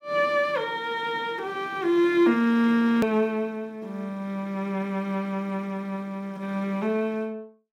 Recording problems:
edit click; at 3 s

